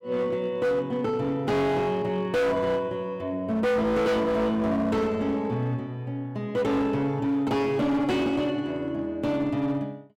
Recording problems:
distortion; hard clipping, signal-to-distortion ratio 8 dB

